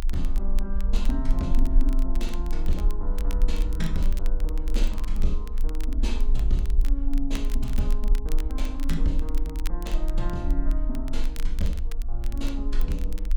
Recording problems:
rumble; below 38 Hz, strongest tone 20 Hz, SNR -5 dB
crackling; vinyl, SNR 13 dB

